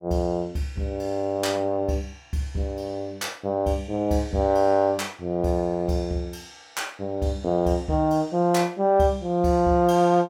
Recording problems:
none

